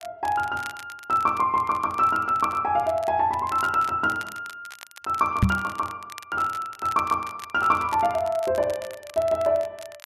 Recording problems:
crackle; vinyl, SNR 20 dB
knock on the microphone; at 5.5 s; peak +8 dB vs average level

